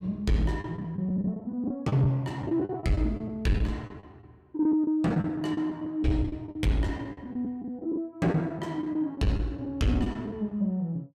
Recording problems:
distorted audio; soft clipping, signal-to-distortion ratio 12 dB
packet loss; 14% of the sound replaced, filled with the last packet

